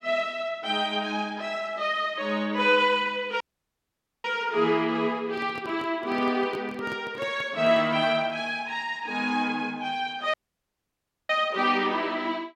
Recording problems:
audio cutting out; at 3.5 s for 1 s and at 10 s for 1 s
handling noise; from 5.5 to 8.5 s; peak -8 dB vs average level

